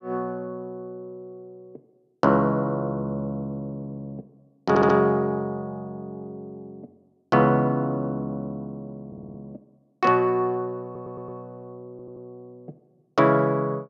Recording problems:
stutter; 4 times, first at 4.5 s

